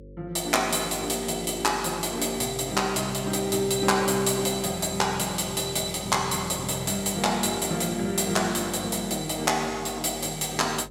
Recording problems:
hum; 50 Hz, harmonics up to 550 Hz, SNR 20 dB

